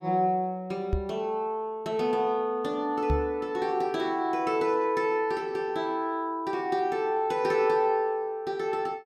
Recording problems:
knock on the microphone; at 1 s and at 3 s; peak +3 dB vs average level

